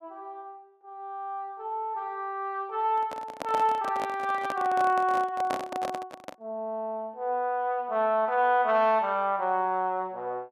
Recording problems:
handling noise; from 3 to 6.5 s; peak -1 dB vs average level

